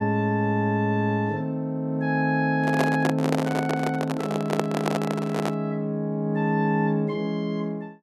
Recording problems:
handling noise; from 2.5 to 5.5 s; peak +4 dB vs average level

